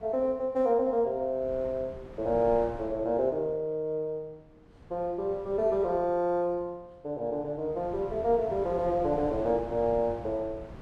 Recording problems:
wind on the microphone; below 450 Hz, SNR 17 dB

